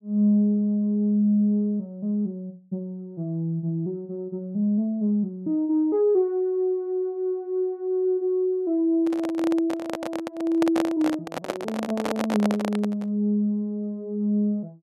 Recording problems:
handling noise; from 9 to 13 s; peak +1 dB vs average level

